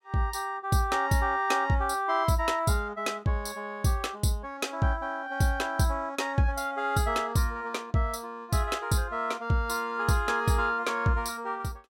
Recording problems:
none

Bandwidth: 16 kHz